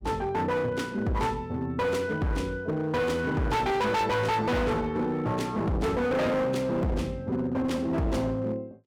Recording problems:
distortion; hard clipping, signal-to-distortion ratio 6 dB

